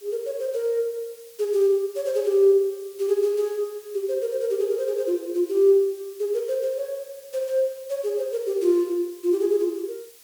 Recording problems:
background hiss; slope +2 dB per octave, SNR 24 dB

